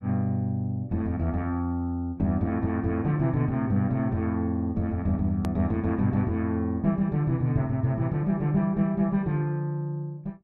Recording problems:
click at an edit; at 5.5 s

